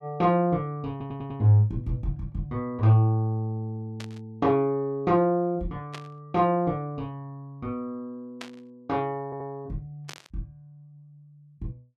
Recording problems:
audio stuttering; at 1 s and at 9.5 s
static burst; 4 times, first at 4 s; peak -8 dB vs average level

